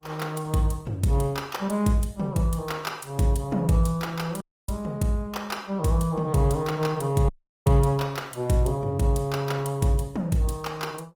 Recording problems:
lossy compression; Opus, log-spectral distance 3 dB, nothing above 19 kHz
dropout; at 4.5 s and at 7.5 s

